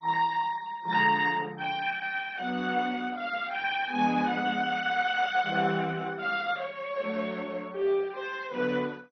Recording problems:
lossy codec; MP2, log-spectral distance 4 dB, nothing above 6 kHz

